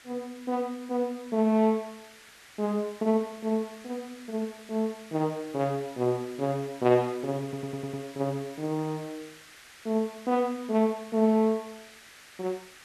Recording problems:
hiss; SNR 20 dB
audio stuttering; at 7.5 s

